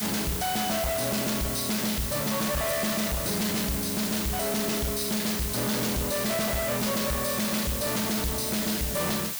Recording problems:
distortion; soft clipping, signal-to-distortion ratio 6 dB
background hiss; slope +1 dB per octave, SNR 2 dB

